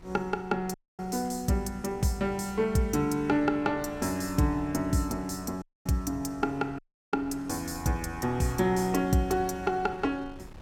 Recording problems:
wind on the microphone; below 280 Hz, SNR 21 dB
audio cutting out; at 0.5 s, at 5.5 s and at 7 s

